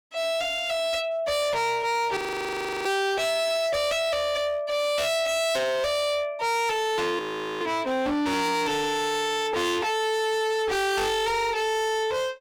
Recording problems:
distortion; hard clipping, signal-to-distortion ratio 6 dB
frozen audio; at 2 s for 0.5 s and at 7 s

